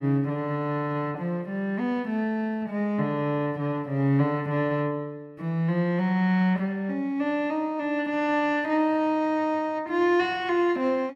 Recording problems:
none

